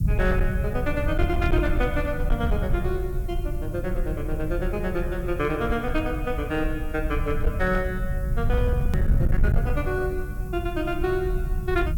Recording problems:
distorted audio; hard clipping, uneven, signal-to-distortion ratio 12 dB
background hiss; SNR 23 dB
rumble; below 94 Hz, SNR 0 dB
edit click; at 9 s

